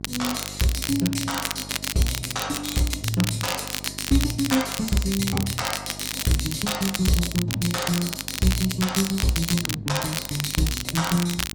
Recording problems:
electrical hum; 50 Hz, harmonics up to 800 Hz, SNR 16 dB
crackling; vinyl, SNR 4 dB

